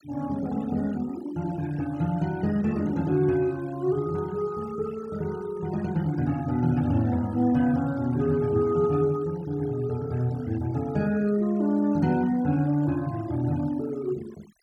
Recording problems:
noise reduction artefacts; signal-to-artefact ratio 22 dB

